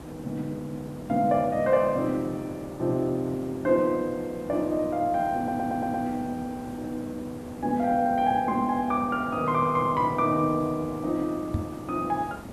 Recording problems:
background hiss; slope -8 dB per octave, SNR 14 dB
stutter; at 5.5 s
microphone thump; at 12 s; peak +2 dB vs average level

